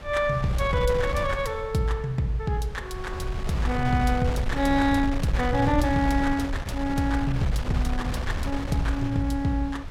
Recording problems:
wind on the microphone; below 140 Hz, SNR 6 dB

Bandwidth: 16.5 kHz